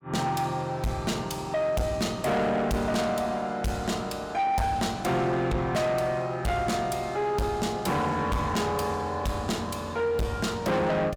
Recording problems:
distortion; soft clipping, signal-to-distortion ratio 7 dB

